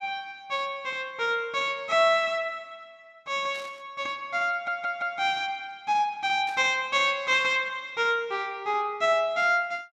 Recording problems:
static burst; at 3.5 s and at 6.5 s; peak -15 dB vs average level
audio stuttering; at 4.5 s

